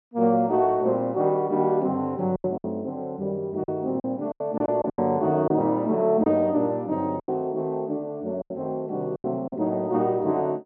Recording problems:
treble missing; nothing above 6 kHz
lost packets; 7% of the sound replaced, filled with silence

